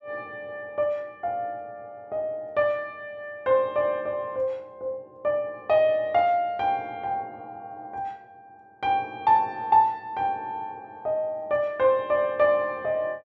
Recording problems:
none

